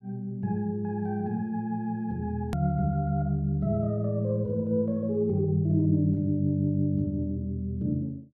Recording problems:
edit click; at 2.5 s

